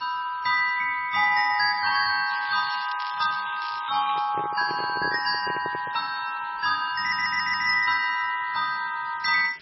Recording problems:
lossy compression; MP3, log-spectral distance 9 dB, nothing above 4.6 kHz
hiss; SNR 24 dB
crackling; from 2.5 to 4 s; loose cable, SNR 14 dB
microphone handling noise; from 4 to 6 s; peak -7 dB vs average level
audio stuttering; at 7 s

